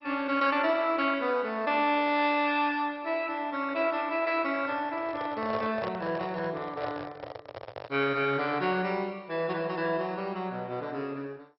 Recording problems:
lossy codec; MP2, log-spectral distance 3 dB, nothing above 5.2 kHz
microphone handling noise; from 4.5 to 8 s; peak -2 dB vs average level

